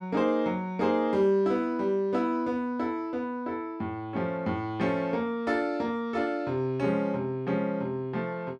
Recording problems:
none

